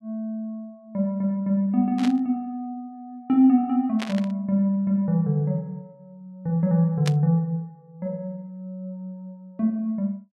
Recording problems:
burst of static; at 2 s, at 4 s and at 7 s; peak -3 dB vs average level

